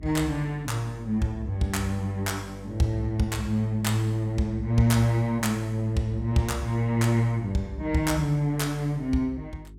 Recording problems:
hum; 50 Hz, harmonics up to 400 Hz, SNR 19 dB

